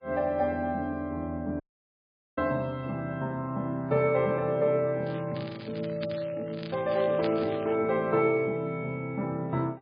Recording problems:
lossy codec; MP3, log-spectral distance 2 dB
dropout; at 1.5 s for 1 s
crackle; from 5 to 7.5 s; loose cable, SNR 17 dB

